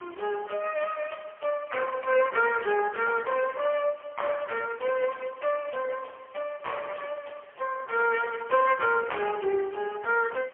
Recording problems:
phone line; 340 Hz to 3.1 kHz, AMR-NB, then MP3
hiss; SNR 27 dB

